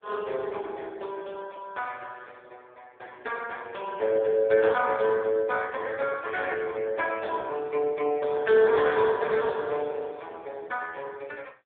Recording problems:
phone line; 300 Hz to 3.5 kHz, AMR-NB

